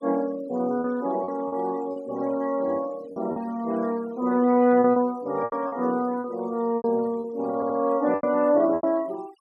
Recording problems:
denoising artefacts; signal-to-artefact ratio 24 dB
lost packets; 8% of the sound replaced, filled with repeated pitch periods
audio stuttering; at 7.5 s

